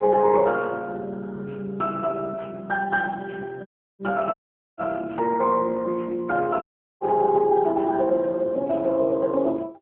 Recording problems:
telephone audio; 220 Hz to 3.2 kHz, AMR-NB
dropout; at 3.5 s, at 4.5 s and at 6.5 s

